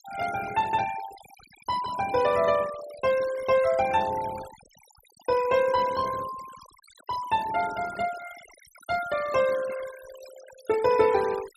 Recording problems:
noise reduction artefacts; signal-to-artefact ratio 16 dB

